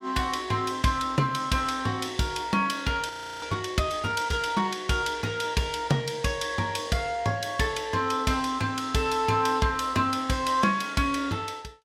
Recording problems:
frozen audio; at 3 s

